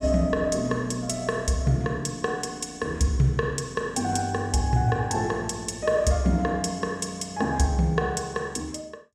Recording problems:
none

